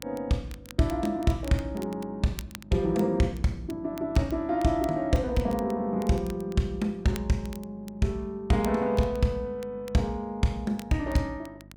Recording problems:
hum; 50 Hz, harmonics up to 700 Hz, SNR 23 dB
crackling; vinyl, SNR 21 dB

